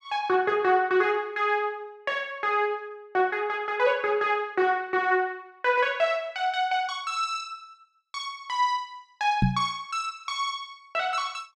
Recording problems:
knock on the microphone; at 9.5 s; peak +7 dB vs average level

